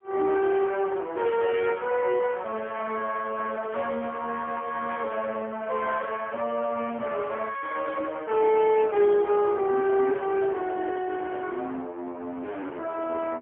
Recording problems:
telephone audio; 240 Hz to 3.3 kHz, AMR-NB, then MP3

